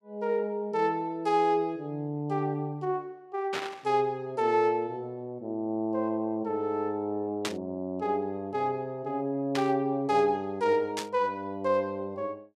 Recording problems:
burst of static; 4 times, first at 3.5 s; peak +2 dB vs average level

